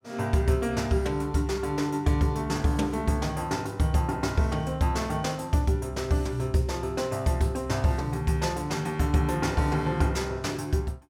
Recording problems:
none

